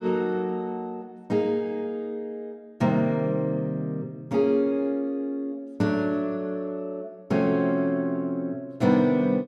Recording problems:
none

